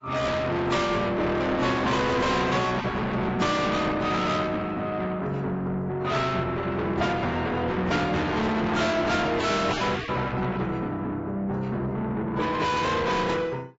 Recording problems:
codec artefacts; AAC, then AAC, log-spectral distance 3 dB, nothing above 7.6 kHz
distorted audio; soft clipping, signal-to-distortion ratio 6 dB

